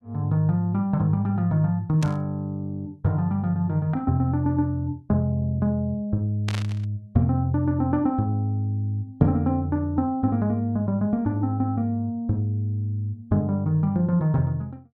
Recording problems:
burst of static; at 2 s and at 6.5 s; peak -4 dB vs average level

